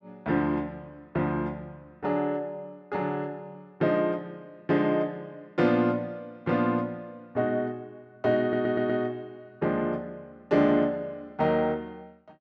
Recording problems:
audio stuttering; at 8.5 s

